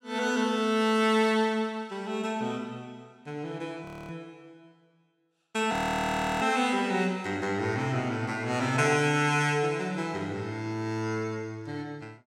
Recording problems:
audio freezing; at 4 s and at 5.5 s for 0.5 s

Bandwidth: 16.5 kHz